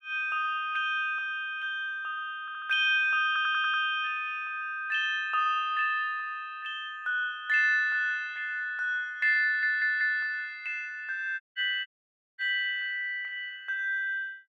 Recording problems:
stutter; at 2.5 s, at 3.5 s and at 9.5 s
dropout; at 11 s and at 12 s for 0.5 s

